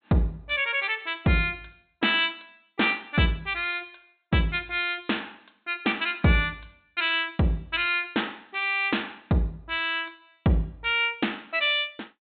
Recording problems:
treble missing; nothing above 4 kHz

